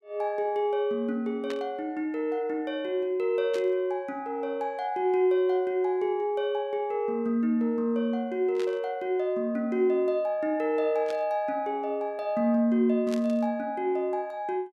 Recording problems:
static burst; 5 times, first at 1.5 s; peak -8 dB vs average level

